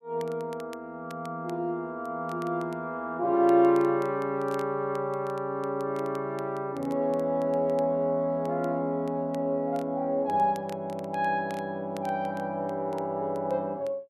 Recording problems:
crackling; vinyl, SNR 26 dB

